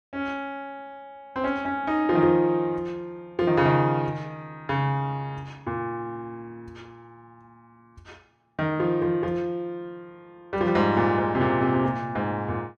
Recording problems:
none

